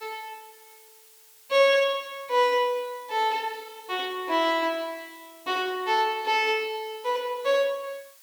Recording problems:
background hiss; slope +3 dB per octave, SNR 25 dB

